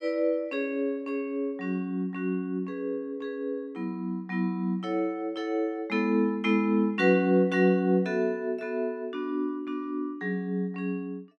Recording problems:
none

